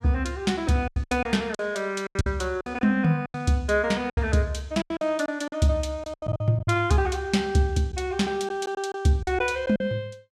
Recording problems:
packet loss; 11% of the sound replaced, filled with silence

